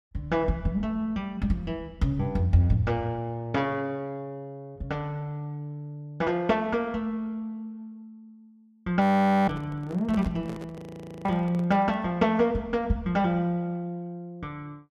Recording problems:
microphone handling noise; from 9 to 12 s; peak -7 dB vs average level
frozen audio; at 9 s and at 11 s

